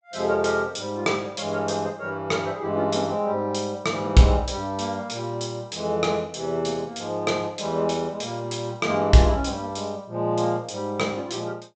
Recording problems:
treble cut off; nothing above 8 kHz

